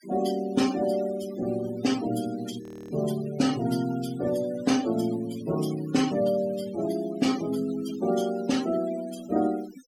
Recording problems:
denoising artefacts; signal-to-artefact ratio 14 dB
audio freezing; at 2.5 s

